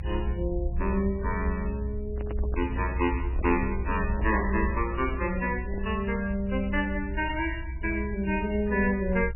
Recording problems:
lossy codec; MP3, log-spectral distance 4 dB, nothing above 2.6 kHz
rumble; below 66 Hz, strongest tone 62 Hz, SNR 4 dB
microphone handling noise; from 2 to 6 s; peak -6 dB vs average level

